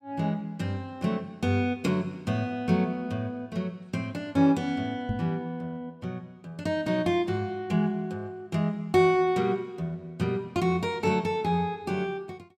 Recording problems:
microphone thump; at 5 s; peak +2 dB vs average level

